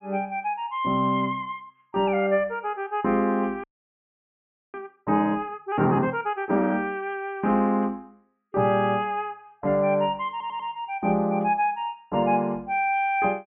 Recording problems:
treble cut off; nothing above 3.2 kHz
audio freezing; at 3.5 s for 1 s
audio stuttering; at 10 s

